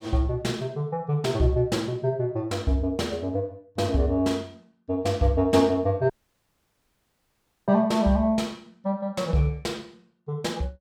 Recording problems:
dropout; at 6 s for 1.5 s

